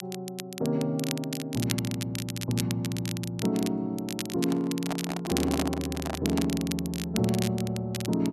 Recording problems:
crackling; vinyl, SNR 8 dB
handling noise; from 4.5 to 6.5 s; peak +1 dB vs average level

